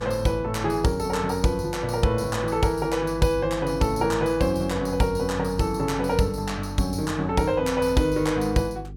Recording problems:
hum; 50 Hz, harmonics up to 450 Hz, SNR 14 dB

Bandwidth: 17.5 kHz